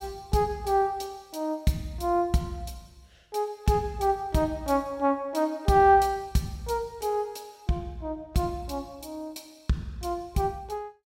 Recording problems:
none

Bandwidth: 16 kHz